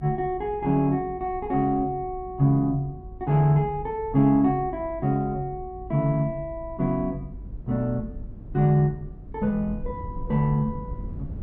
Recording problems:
low-frequency rumble; below 110 Hz, SNR 16 dB

